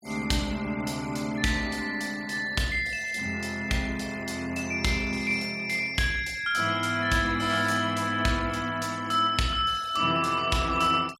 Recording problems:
denoising artefacts; signal-to-artefact ratio 21 dB

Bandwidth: 16 kHz